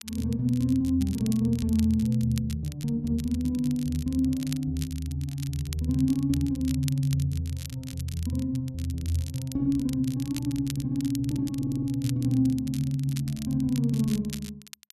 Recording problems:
crackle; vinyl, SNR 17 dB
stutter; at 12 s

